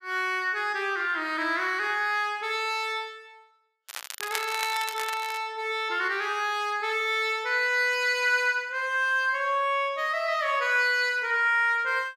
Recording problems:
crackling; from 4 to 5.5 s; loose cable, SNR 10 dB

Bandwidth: 14.5 kHz